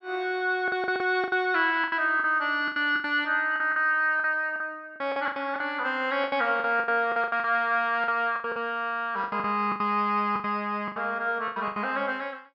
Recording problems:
packet loss; 15% of the sound replaced, filled with the last packet

